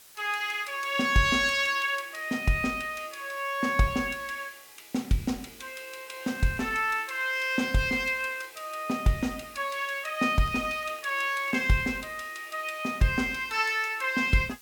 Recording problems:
background hiss; slope +1 dB per octave, SNR 21 dB
crackling; from 6 to 8.5 s and from 10 to 12 s; loose cable, SNR 27 dB

